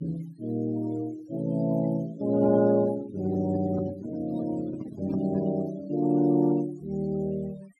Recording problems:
noise reduction artefacts; signal-to-artefact ratio 21 dB
handling noise; from 2 to 5.5 s; peak -3 dB vs average level

